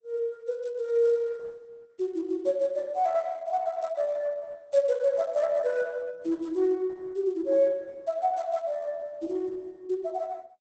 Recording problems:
lossy codec; Opus, log-spectral distance 2 dB, nothing above 8.2 kHz

